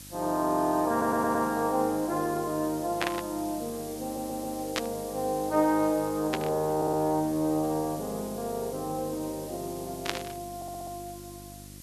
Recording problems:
electrical hum; 50 Hz, harmonics up to 800 Hz, SNR 20 dB
hiss; slope +3 dB per octave, SNR 15 dB
audio stuttering; 4 times, first at 1 s
static burst; 4 times, first at 3 s; peak +4 dB vs average level

